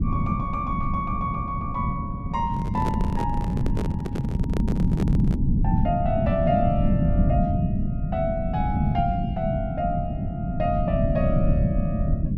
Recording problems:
rumble; below 200 Hz, SNR -4 dB
handling noise; from 2.5 to 5.5 s; peak +2 dB vs average level

